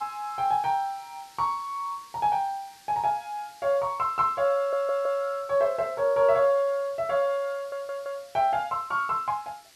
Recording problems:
background hiss; SNR 25 dB
audio stuttering; at 4.5 s and at 7.5 s

